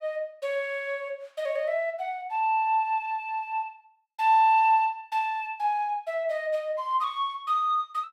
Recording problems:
none

